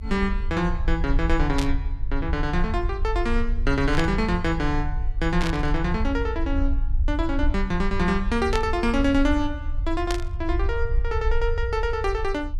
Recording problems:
rumble; below 62 Hz, strongest tone 24 Hz, SNR 3 dB
burst of static; 5 times, first at 1.5 s; peak 0 dB vs average level

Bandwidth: 13 kHz